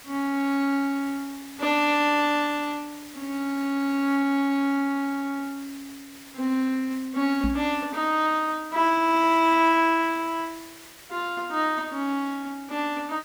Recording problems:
background hiss; SNR 20 dB
microphone bump; at 7.5 s; peak 0 dB vs average level

